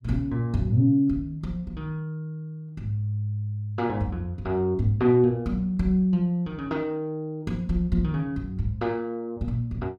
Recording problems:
none

